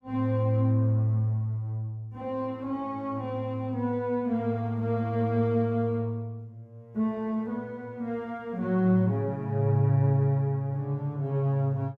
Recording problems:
none

